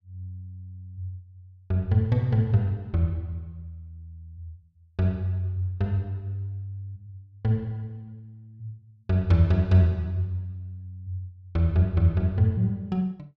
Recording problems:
none

